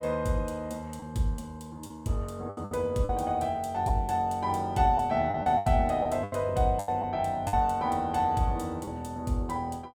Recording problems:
lost packets; 6% of the sound replaced, filled with the last packet

